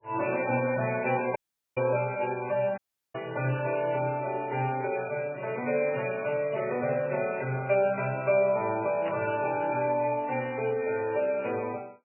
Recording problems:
codec artefacts; MP3, log-spectral distance 5 dB, nothing above 2.4 kHz
dropout; at 1.5 s and at 3 s
static burst; at 3 s and at 9 s; peak -7 dB vs average level

